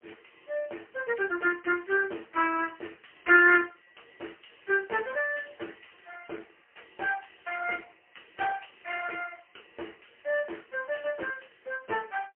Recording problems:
phone line; 280 Hz to 3.1 kHz, AMR-NB, then MP3

